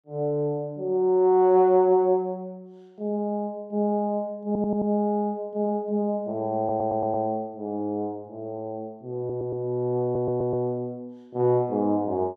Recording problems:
audio stuttering; 4 times, first at 4.5 s

